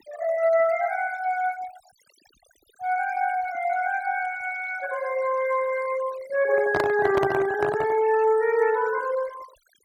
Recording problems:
noise reduction artefacts; signal-to-artefact ratio 16 dB
microphone handling noise; from 6.5 to 8 s; peak +3 dB vs average level

